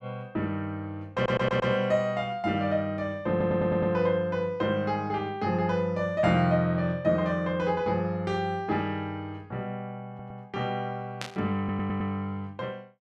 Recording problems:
stutter; 4 times, first at 1 s
static burst; at 11 s; peak -3 dB vs average level

